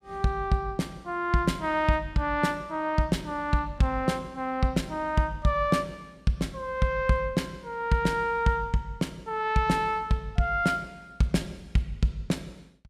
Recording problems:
none

